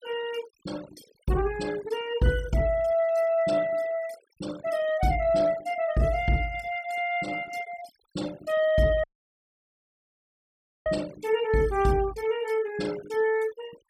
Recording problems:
denoising artefacts; signal-to-artefact ratio 19 dB
audio cutting out; at 9 s for 2 s

